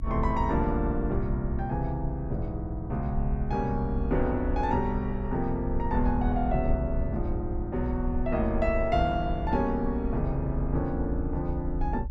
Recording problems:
low-frequency rumble; below 62 Hz, SNR 5 dB

